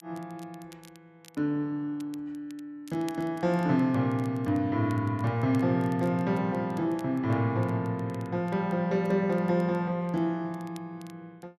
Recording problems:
crackle; vinyl, SNR 28 dB

